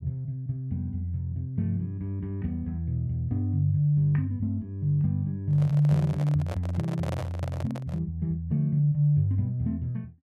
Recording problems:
handling noise; from 5.5 to 8 s; peak -4 dB vs average level

